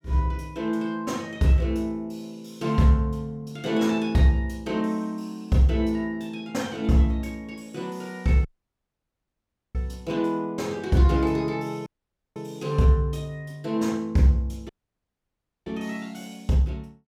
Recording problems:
audio cutting out; at 8.5 s for 1.5 s, at 12 s for 0.5 s and at 15 s for 1 s

